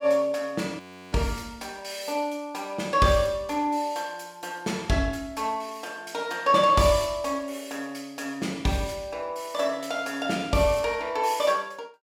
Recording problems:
frozen audio; at 1 s

